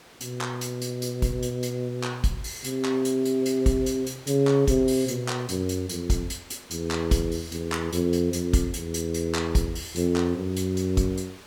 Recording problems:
hiss; slope -3 dB per octave, SNR 22 dB

